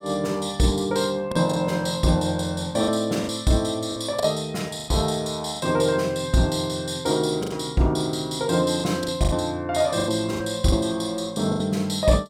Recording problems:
packet loss; 7% of the sound replaced, filled with the last packet

